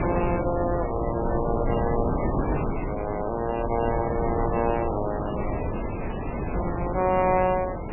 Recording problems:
codec artefacts; MP3, log-spectral distance 7 dB, nothing above 2.4 kHz
wind noise; below 600 Hz, SNR 2 dB

